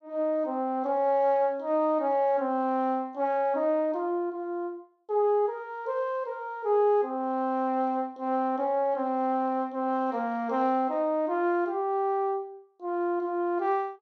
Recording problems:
none

